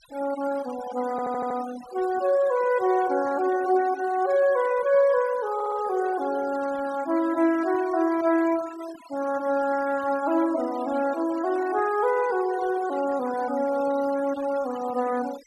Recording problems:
noise reduction artefacts; signal-to-artefact ratio 18 dB
audio stuttering; at 1 s and at 5.5 s

